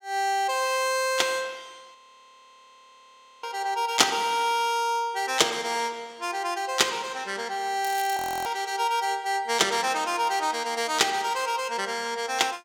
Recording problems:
frozen audio; at 2 s for 1.5 s and at 8 s
crackle; at 8 s; loose cable, SNR 15 dB

